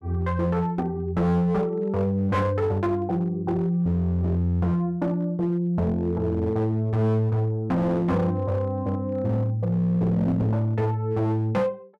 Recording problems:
distorted audio; hard clipping, signal-to-distortion ratio 11 dB

